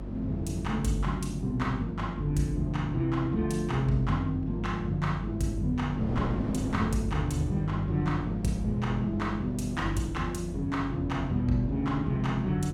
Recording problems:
hum; 50 Hz, harmonics up to 350 Hz, SNR 9 dB
wind on the microphone; below 440 Hz, SNR 13 dB

